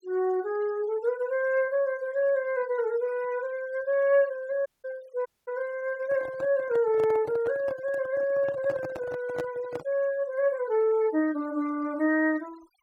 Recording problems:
denoising artefacts; signal-to-artefact ratio 23 dB
dropout; at 4.5 s and at 5.5 s
handling noise; from 6 to 10 s; peak -4 dB vs average level

